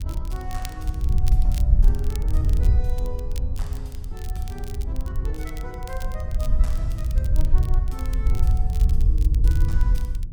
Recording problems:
wind noise; below 66 Hz, SNR -15 dB
crackle; vinyl, SNR 7 dB

